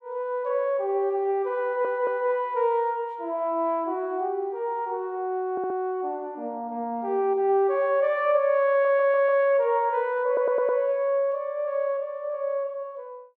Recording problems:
audio stuttering; 4 times, first at 1.5 s

